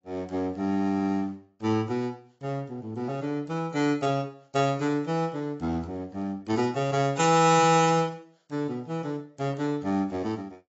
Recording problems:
codec artefacts; AAC, log-spectral distance 2 dB, nothing above 6.5 kHz

